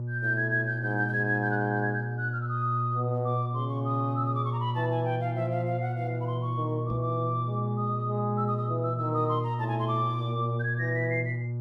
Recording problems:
mains hum; 60 Hz, harmonics up to 600 Hz, SNR 2 dB
knock on the microphone; at 7 s; peak -4 dB vs average level

